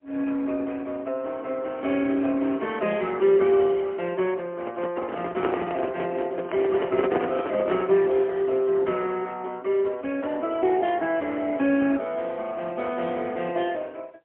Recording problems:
phone line; 240 Hz to 3.2 kHz, AMR-NB, then MP3
handling noise; from 4.5 to 8 s; peak +6 dB vs average level

